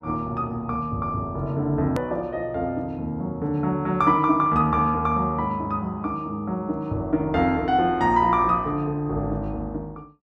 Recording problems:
click at an edit; at 2 s

